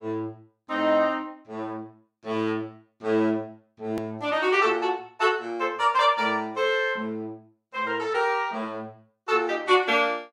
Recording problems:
click at an edit; at 4 s

